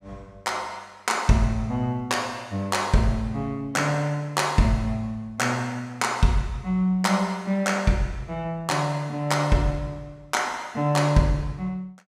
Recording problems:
none

